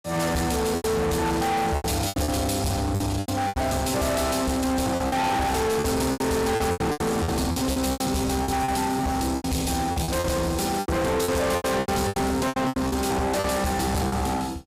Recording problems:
distorted audio; soft clipping, signal-to-distortion ratio 6 dB
packet loss; 14% of the sound replaced, filled with repeated pitch periods

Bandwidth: 15.5 kHz